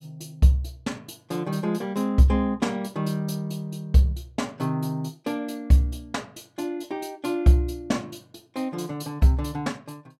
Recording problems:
none

